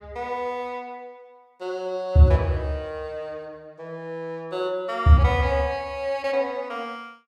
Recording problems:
none

